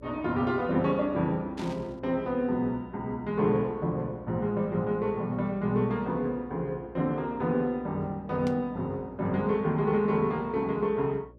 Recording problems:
electrical hum; 60 Hz, harmonics up to 600 Hz, SNR 23 dB
static burst; at 1.5 s and at 8.5 s; peak -11 dB vs average level

